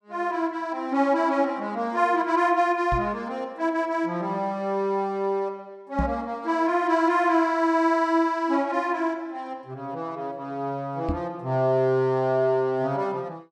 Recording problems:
microphone thump; at 3 s, at 6 s and at 11 s; peak 0 dB vs average level

